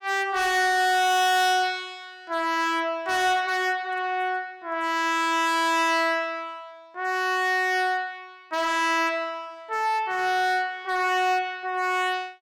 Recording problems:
distorted audio; hard clipping, signal-to-distortion ratio 7 dB

